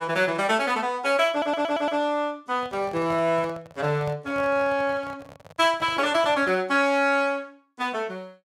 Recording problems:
stutter; at 1.5 s
microphone handling noise; from 2.5 to 6.5 s; peak -11 dB vs average level

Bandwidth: 16 kHz